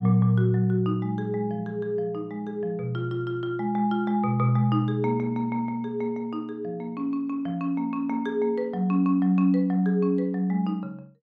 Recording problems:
none

